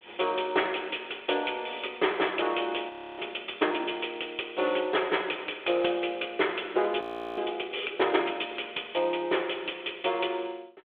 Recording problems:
phone line; 300 Hz to 3.5 kHz, G.726
audio freezing; at 3 s and at 7 s

